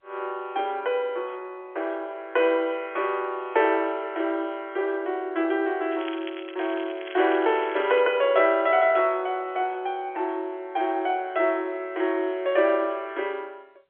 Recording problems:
phone line; 280 Hz to 3.4 kHz, G.711
crackling; from 6 to 8 s; loose cable, SNR 17 dB

